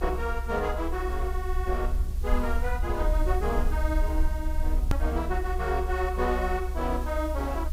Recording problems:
background hiss; slope +2 dB per octave, SNR 19 dB
rumble; below 64 Hz, SNR 0 dB
edit click; at 5 s

